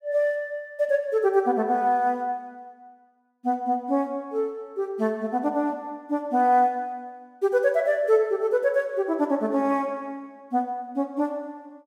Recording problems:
none

